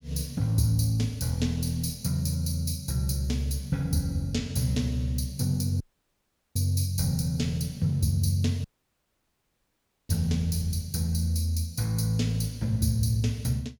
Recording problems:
audio cutting out; at 6 s for 1 s and at 8.5 s for 1.5 s

